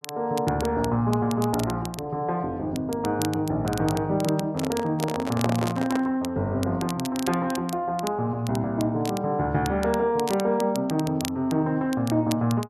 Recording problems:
crackling; vinyl, SNR 14 dB
microphone handling noise; from 4.5 to 6 s; peak +3 dB vs average level

